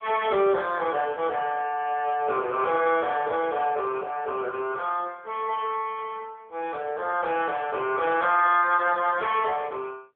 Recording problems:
phone line; 340 Hz to 3.3 kHz, AMR-NB
static burst; at 2 s, at 6 s and at 7.5 s; peak -15 dB vs average level

